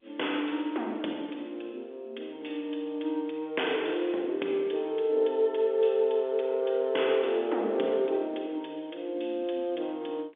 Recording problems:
telephone audio; 260 Hz to 3.6 kHz, G.711

